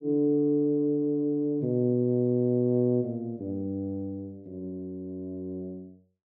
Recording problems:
none

